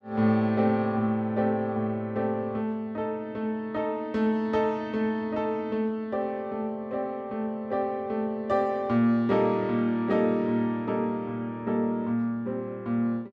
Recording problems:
none

